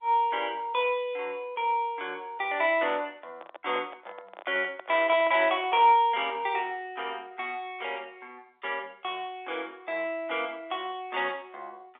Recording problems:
telephone audio; 340 Hz to 3.6 kHz, G.711
microphone handling noise; from 3 to 6 s; peak -7 dB vs average level

